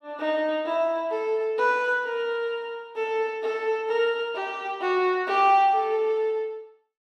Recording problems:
none

